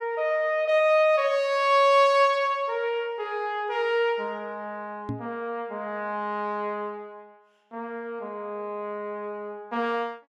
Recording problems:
knock on the microphone; at 5 s; peak -3 dB vs average level

